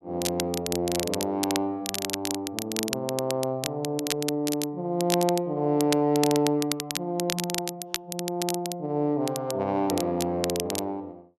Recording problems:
crackling; vinyl, SNR 5 dB

